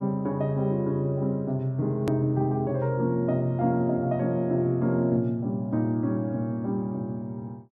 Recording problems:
hard cut with a click; at 2 s

